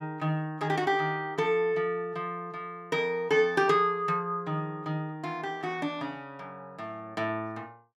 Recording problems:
none

